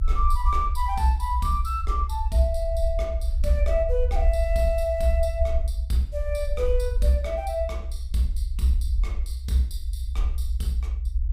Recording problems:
rumble; below 64 Hz, SNR 1 dB

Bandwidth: 15.5 kHz